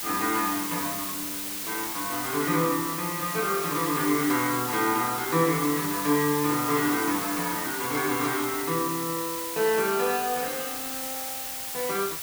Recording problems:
background hiss; slope +1 dB per octave, SNR 4 dB

